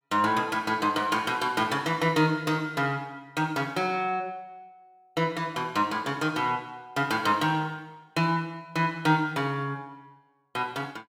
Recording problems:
none

